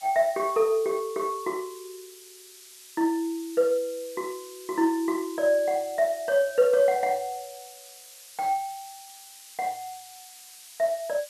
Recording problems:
background hiss; slope +5 dB per octave, SNR 18 dB

